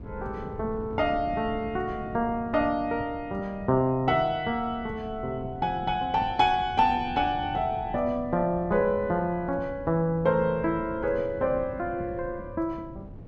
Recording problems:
wind on the microphone; below 240 Hz, SNR 15 dB

